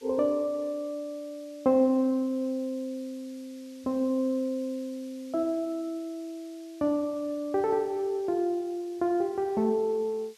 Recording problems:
background hiss; slope +2 dB per octave, SNR 26 dB

